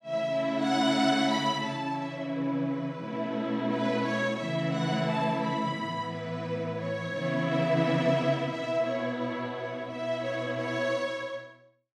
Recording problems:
none

